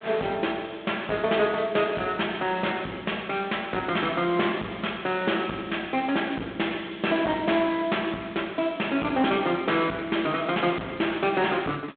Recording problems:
phone line; 220 Hz to 3.6 kHz, G.726
distorted audio; soft clipping, signal-to-distortion ratio 10 dB

